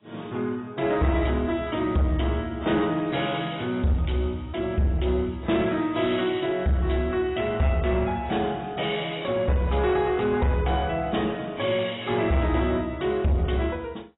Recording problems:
codec artefacts; AAC, log-spectral distance 5 dB, nothing above 3.8 kHz
distorted audio; soft clipping, signal-to-distortion ratio 11 dB

